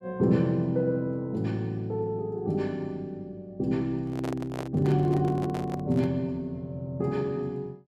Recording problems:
microphone handling noise; from 4 to 6 s; peak -3 dB vs average level

